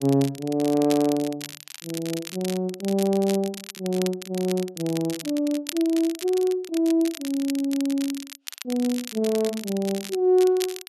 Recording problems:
crackling; vinyl, SNR 13 dB

